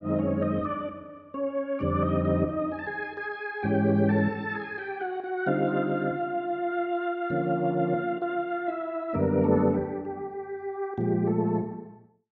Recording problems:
none

